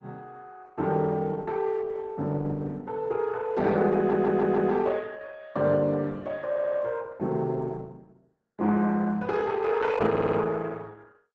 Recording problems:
lossy codec; Opus, log-spectral distance 3 dB
audio stuttering; at 4 s, at 6.5 s and at 10 s

